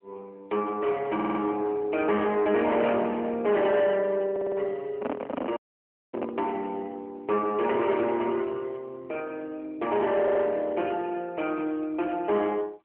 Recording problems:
phone line; 220 Hz to 3.1 kHz, AMR-NB
distorted audio; soft clipping, signal-to-distortion ratio 10 dB
audio stuttering; at 1 s, at 4.5 s and at 10 s
microphone handling noise; from 5 to 6.5 s; peak -1 dB vs average level
audio cutting out; at 5.5 s for 0.5 s

